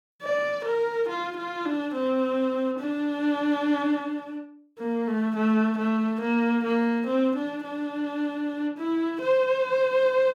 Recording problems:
none

